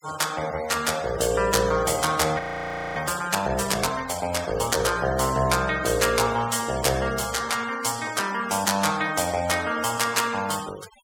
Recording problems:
noise reduction artefacts; signal-to-artefact ratio 15 dB
frozen audio; at 2.5 s for 0.5 s

